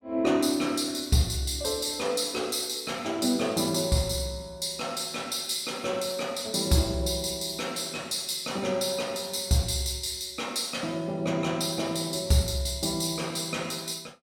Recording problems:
none

